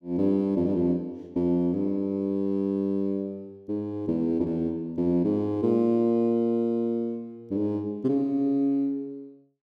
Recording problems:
none

